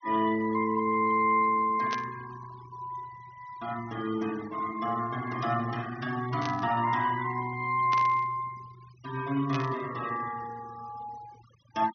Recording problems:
low-pass filter; nothing above 6.3 kHz
denoising artefacts; signal-to-artefact ratio 18 dB
static burst; 4 times, first at 2 s; peak -3 dB vs average level

